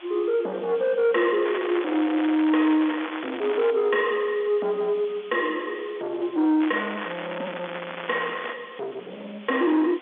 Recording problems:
phone line; 320 Hz to 3.5 kHz, G.711
distortion; soft clipping, signal-to-distortion ratio 9 dB
background hiss; SNR 21 dB
crackling; from 1.5 to 3.5 s and from 6.5 to 8.5 s; loose cable, SNR 10 dB

